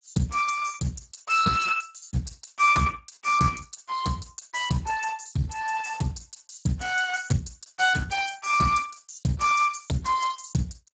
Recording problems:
lossy codec; Speex, log-spectral distance 7 dB, nothing above 7.6 kHz
lost packets; 6% of the sound replaced, filled with repeated pitch periods

